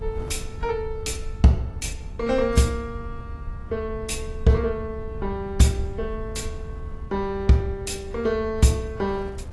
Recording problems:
lossy codec; AAC, log-spectral distance 2 dB, nothing above 11.3 kHz
low-frequency rumble; below 78 Hz, SNR 12 dB
wind on the microphone; below 320 Hz, SNR 22 dB

